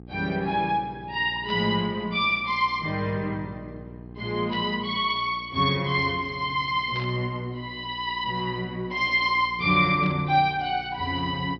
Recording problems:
treble missing; nothing above 5.5 kHz
electrical hum; 60 Hz, harmonics up to 840 Hz, SNR 20 dB
static burst; 4 times, first at 1.5 s; peak -12 dB vs average level

